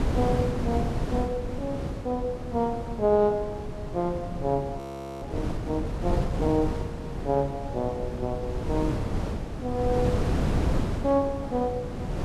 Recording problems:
wind on the microphone; below 320 Hz, SNR 2 dB
frozen audio; at 5 s

